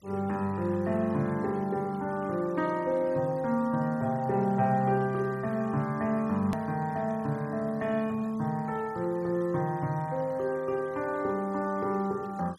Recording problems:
noise reduction artefacts; signal-to-artefact ratio 26 dB
click at an edit; at 6.5 s

